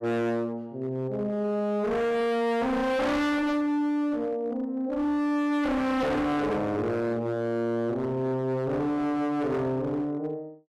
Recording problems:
distorted audio; hard clipping, signal-to-distortion ratio 6 dB

